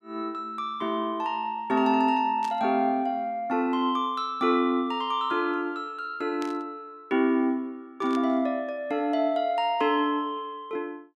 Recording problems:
burst of static; at 2.5 s, at 6.5 s and at 8 s; peak -10 dB vs average level

